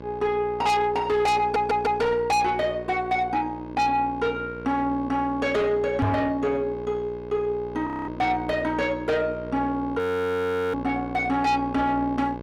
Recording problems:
distorted audio; soft clipping, signal-to-distortion ratio 6 dB
mains hum; 60 Hz, harmonics up to 2.1 kHz, SNR 13 dB
audio stuttering; at 1.5 s
microphone thump; at 6 s; peak +4 dB vs average level
audio freezing; at 8 s and at 10 s for 0.5 s

